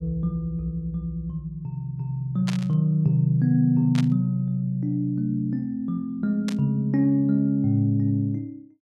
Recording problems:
burst of static; at 2.5 s, at 4 s and at 6.5 s; peak -5 dB vs average level

